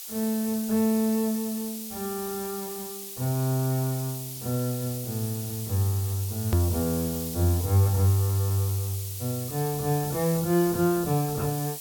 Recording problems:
background hiss; SNR 8 dB
hard cut with a click; at 6.5 s

